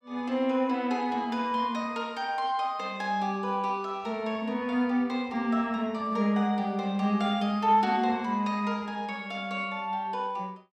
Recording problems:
none

